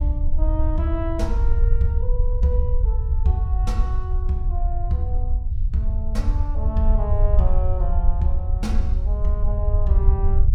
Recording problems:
low-frequency rumble; below 64 Hz, SNR -5 dB

